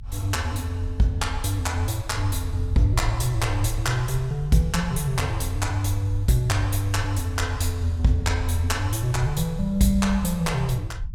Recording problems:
low-frequency rumble; below 76 Hz, SNR 10 dB

